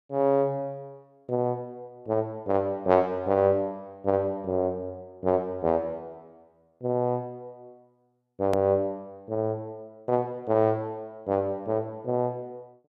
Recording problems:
edit click; at 8.5 s

